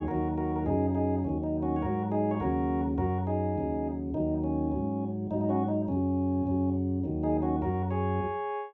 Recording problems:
none

